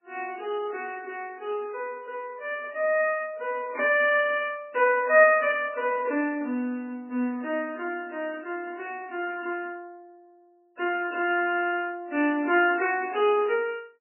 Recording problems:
lossy compression; MP3, log-spectral distance 3 dB, nothing above 2.6 kHz

